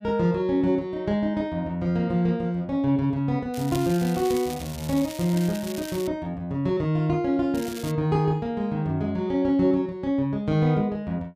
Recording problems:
crackling; from 3.5 to 6 s and at 7.5 s; loose cable, SNR 15 dB

